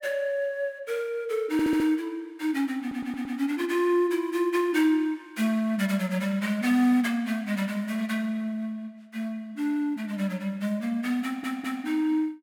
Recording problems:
audio stuttering; at 1.5 s, at 3 s and at 11 s

